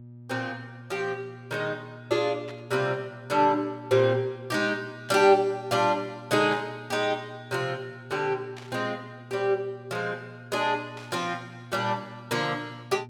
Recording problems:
hum; 60 Hz, harmonics up to 600 Hz, SNR 18 dB
burst of static; 5 times, first at 2.5 s; peak -12 dB vs average level

